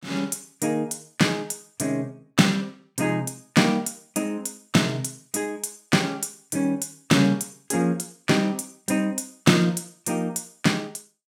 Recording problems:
none

